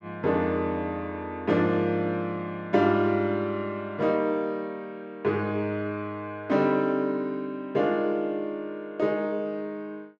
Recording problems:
none

